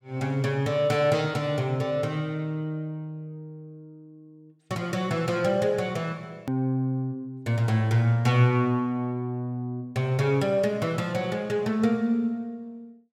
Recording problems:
click at an edit; at 6.5 s

